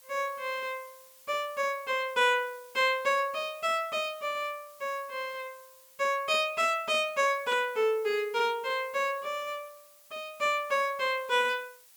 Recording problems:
background hiss; slope +2 dB per octave, SNR 24 dB

